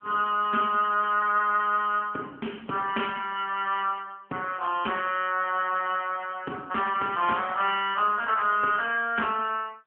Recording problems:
phone line; 240 Hz to 3.2 kHz, AMR-NB

